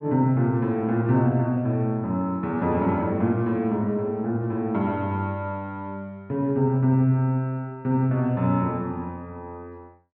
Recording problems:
treble cut off; nothing above 6.1 kHz

